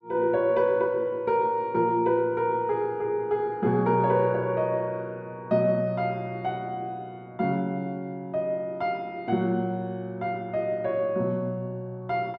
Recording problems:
none

